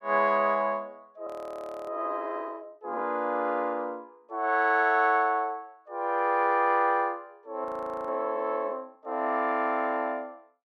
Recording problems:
audio freezing; at 1.5 s for 0.5 s and at 7.5 s

